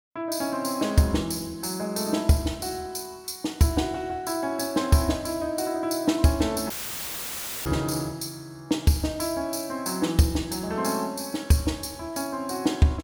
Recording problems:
dropout; at 6.5 s for 1 s; filled with static

